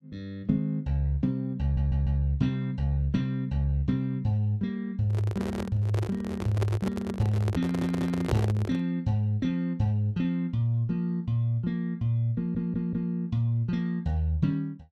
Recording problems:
stutter; at 1.5 s, at 7.5 s and at 12 s
handling noise; from 5 to 9 s; peak +2 dB vs average level

